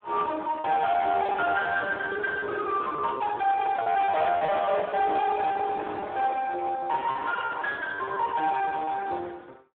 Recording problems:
telephone audio; 260 Hz to 3.6 kHz, Speex
distorted audio; hard clipping, uneven, signal-to-distortion ratio 10 dB
packet loss; 10% of the sound replaced, filled with repeated pitch periods

